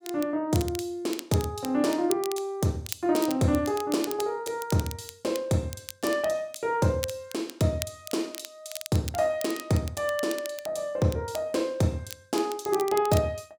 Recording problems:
crackle; vinyl, SNR 12 dB

